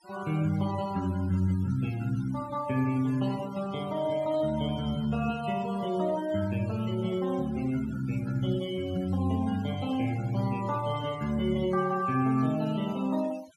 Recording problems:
denoising artefacts; signal-to-artefact ratio 20 dB

